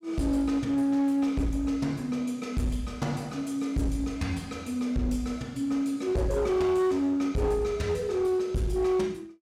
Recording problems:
distorted audio; hard clipping, uneven, signal-to-distortion ratio 11 dB

